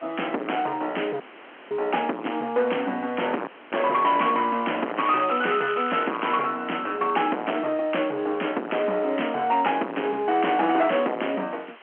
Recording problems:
telephone audio; 260 Hz to 3.2 kHz, G.711
distorted audio; hard clipping, signal-to-distortion ratio 6 dB
hiss; SNR 23 dB
audio cutting out; at 1 s for 0.5 s and at 3.5 s
crackle; from 5 to 6.5 s; loose cable, SNR 13 dB

